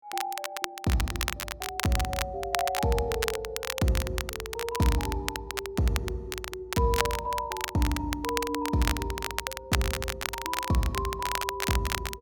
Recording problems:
crackling; vinyl, SNR 3 dB

